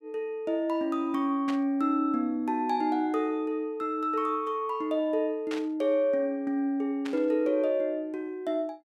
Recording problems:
static burst; at 1.5 s, at 5.5 s and at 7 s; peak -6 dB vs average level

